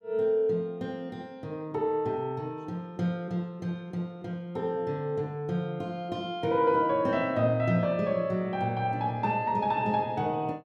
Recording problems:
none

